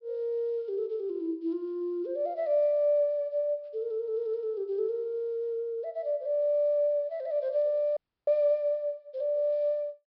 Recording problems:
low-pass filter; nothing above 5.5 kHz
dropout; at 8 s

